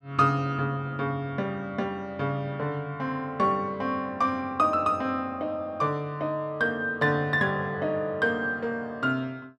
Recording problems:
none

